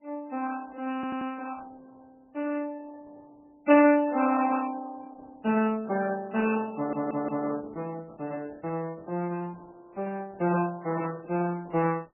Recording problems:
lossy codec; Opus, then MP3, log-spectral distance 3 dB, nothing above 2.4 kHz
stutter; at 1 s and at 7 s

